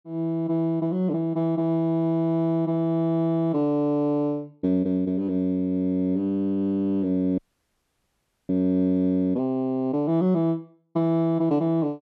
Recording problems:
audio freezing; at 7.5 s for 1 s

